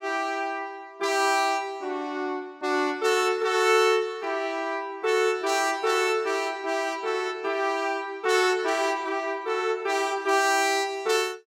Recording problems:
none

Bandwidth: 16.5 kHz